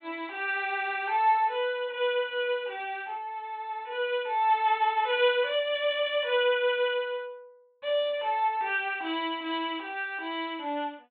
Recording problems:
treble cut off; nothing above 4 kHz

